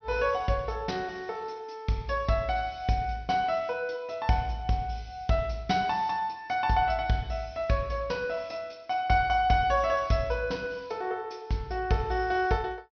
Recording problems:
low-pass filter; nothing above 6.1 kHz

